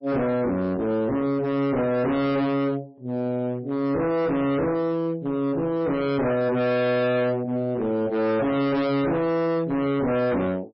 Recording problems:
codec artefacts; MP3, log-spectral distance 2 dB, nothing above 5.5 kHz
distortion; hard clipping, uneven, signal-to-distortion ratio 5 dB

